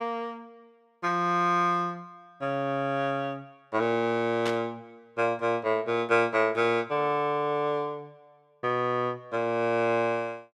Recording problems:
burst of static; at 4.5 s; peak -3 dB vs average level

